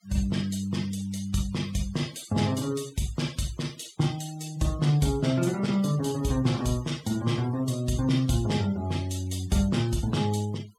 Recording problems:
noise reduction artefacts; signal-to-artefact ratio 19 dB

